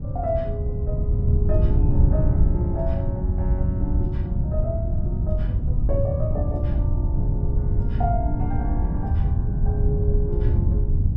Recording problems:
wind noise; below 110 Hz, SNR -8 dB

